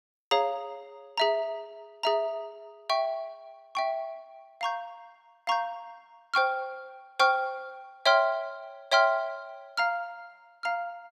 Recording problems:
none

